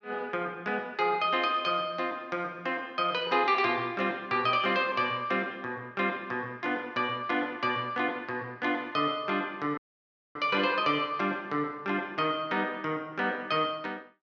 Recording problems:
dropout; at 10 s for 0.5 s

